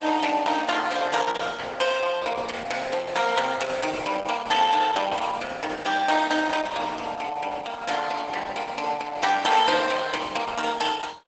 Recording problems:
codec artefacts; Opus, log-spectral distance 5 dB, nothing above 8 kHz

